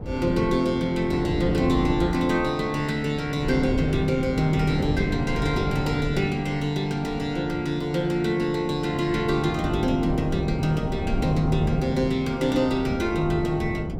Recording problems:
wind on the microphone; below 290 Hz, SNR 6 dB

